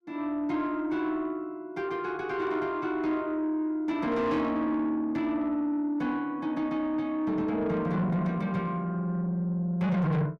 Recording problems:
distortion; soft clipping, signal-to-distortion ratio 11 dB

